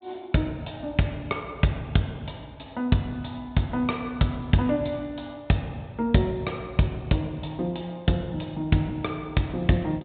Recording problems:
treble missing; nothing above 4 kHz

